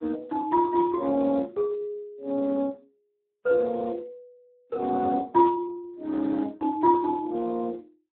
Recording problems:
phone line; 220 Hz to 2 kHz, Speex

